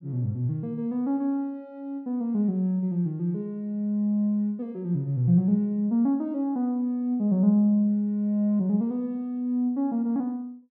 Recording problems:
none

